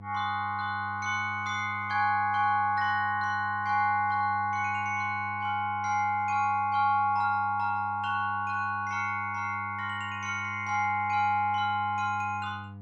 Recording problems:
electrical hum; 50 Hz, harmonics up to 700 Hz, SNR 16 dB

